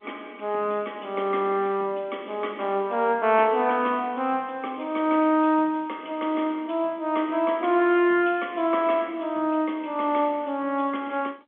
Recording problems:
telephone audio; 220 Hz to 3.4 kHz, G.711

